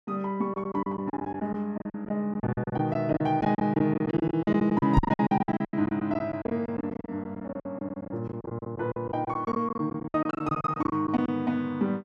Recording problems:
packet loss; 19% of the sound replaced, filled with silence
microphone bump; at 5 s; peak +9 dB vs average level

